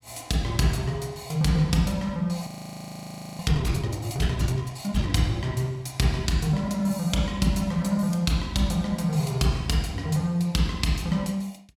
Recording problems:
audio freezing; at 2.5 s for 1 s

